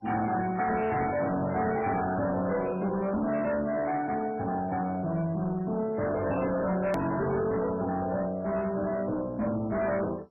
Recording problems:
lossy compression; MP3, then MP2, log-spectral distance 3 dB, nothing above 13.1 kHz
distorted audio; hard clipping, signal-to-distortion ratio 7 dB
click at an edit; at 7 s

